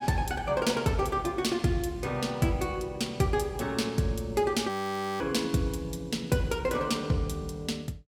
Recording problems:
audio freezing; at 4.5 s for 0.5 s

